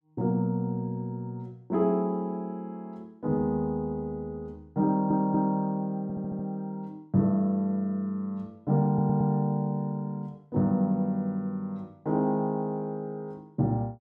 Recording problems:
audio stuttering; at 5 s, at 6 s and at 9 s

